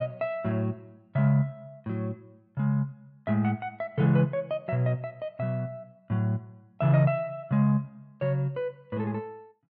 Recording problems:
none

